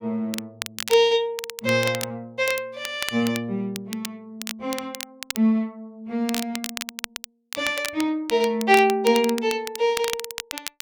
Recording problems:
crackling; vinyl, SNR 10 dB

